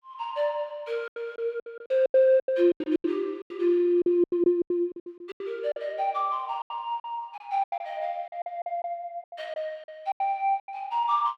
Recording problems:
packet loss; 16% of the sound replaced, filled with silence

